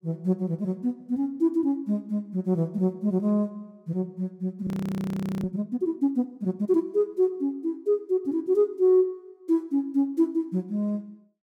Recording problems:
frozen audio; at 4.5 s for 1 s

